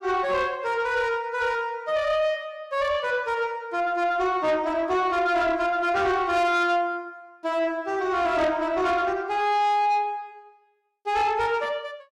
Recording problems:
distorted audio; soft clipping, signal-to-distortion ratio 11 dB

